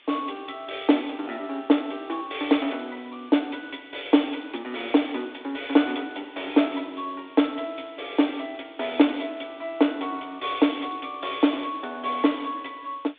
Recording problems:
phone line; 240 Hz to 3.6 kHz, G.726
hiss; SNR 26 dB

